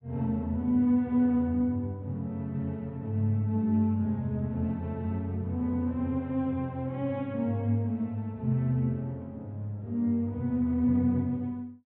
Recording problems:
low-pass filter; nothing above 4 kHz

